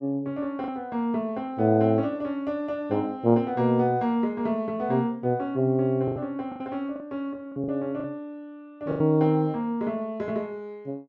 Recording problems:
lost packets; 4% of the sound replaced, filled with the last packet

